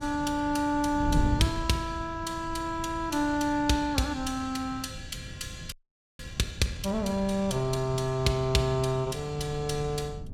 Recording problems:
wind on the microphone; below 150 Hz, SNR 10 dB
audio freezing; at 5.5 s

